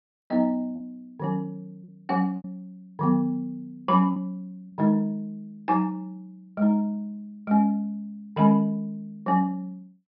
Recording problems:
low-pass filter; nothing above 5.5 kHz
packet loss; 2% of the sound replaced, filled with repeated pitch periods

